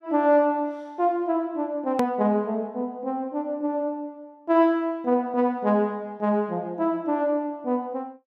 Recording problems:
edit click; at 2 s

